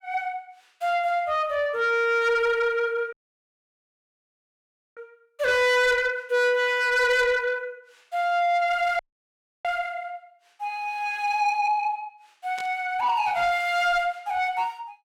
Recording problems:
distortion; soft clipping, signal-to-distortion ratio 10 dB
audio cutting out; at 3 s for 2 s and at 9 s for 0.5 s
burst of static; at 13 s; peak -11 dB vs average level

